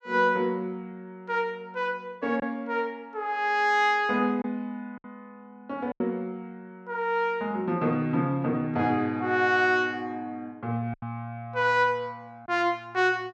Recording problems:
lost packets; 2% of the sound replaced, filled with silence

